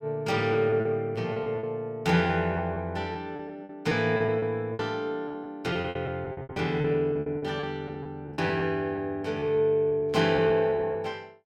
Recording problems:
lost packets; 12% of the sound replaced, filled with repeated pitch periods
burst of static; at 10 s; peak -10 dB vs average level

